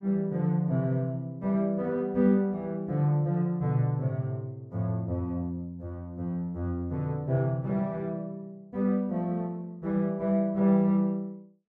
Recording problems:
none

